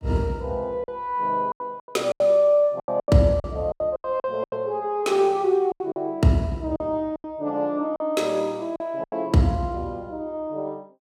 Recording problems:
packet loss; 11% of the sound replaced, filled with silence

